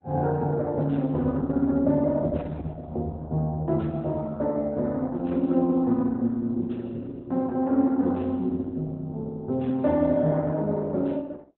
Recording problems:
lossy codec; Opus, log-spectral distance 2 dB, nothing above 4 kHz

